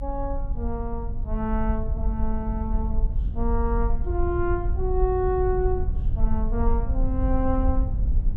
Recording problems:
rumble; below 58 Hz, SNR -1 dB

